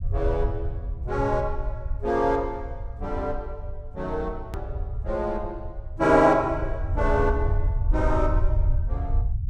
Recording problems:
low-frequency rumble; below 80 Hz, SNR 5 dB
edit click; at 4.5 s

